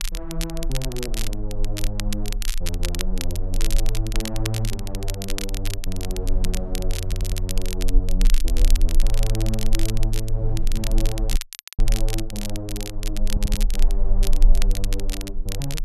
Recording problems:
rumble; below 34 Hz, strongest tone 22 Hz, SNR -3 dB
wind on the microphone; below 130 Hz, SNR 13 dB
crackling; vinyl, SNR 3 dB
audio stuttering; at 7 s and at 13 s
dropout; at 11 s

